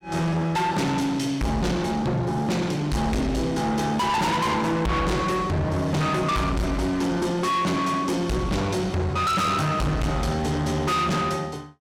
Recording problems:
distorted audio; soft clipping, signal-to-distortion ratio 6 dB

